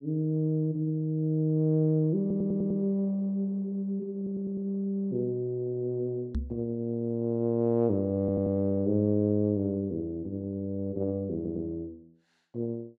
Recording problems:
audio stuttering; 4 times, first at 2 s
microphone thump; at 6.5 s; peak +1 dB vs average level

